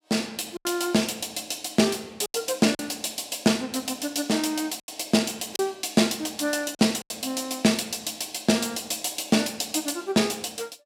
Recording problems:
packet loss; 4% of the sound replaced, filled with silence

